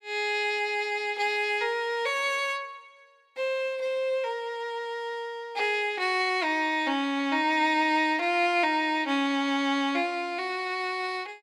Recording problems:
none

